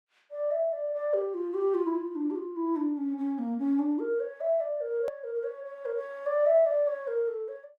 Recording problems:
edit click; at 5 s

